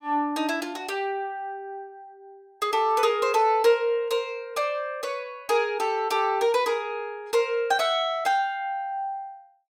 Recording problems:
none

